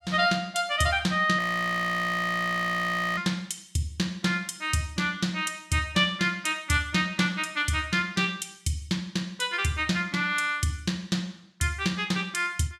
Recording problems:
frozen audio; at 1.5 s for 2 s

